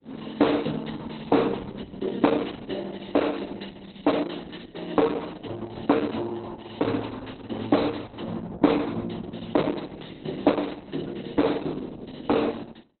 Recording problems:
codec artefacts; Opus, log-spectral distance 8 dB, nothing above 4.1 kHz

